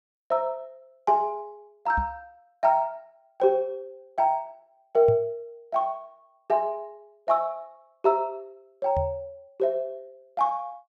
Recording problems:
microphone bump; at 2 s, at 5 s and at 9 s; peak -1 dB vs average level

